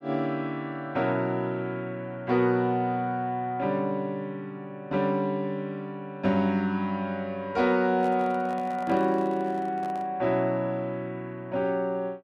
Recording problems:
microphone handling noise; from 8 to 10 s; peak -9 dB vs average level

